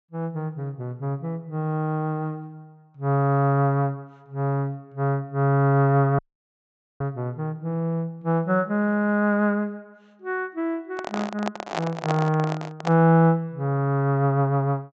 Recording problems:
treble cut off; nothing above 8 kHz
audio cutting out; at 6 s for 1 s
handling noise; from 11 to 13 s; peak +1 dB vs average level

